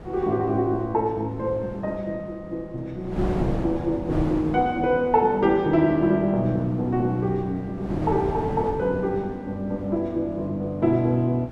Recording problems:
wind on the microphone; below 460 Hz, SNR 12 dB

